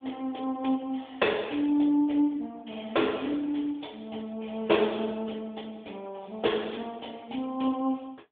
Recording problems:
telephone audio; 240 Hz to 3.5 kHz, AMR-NB

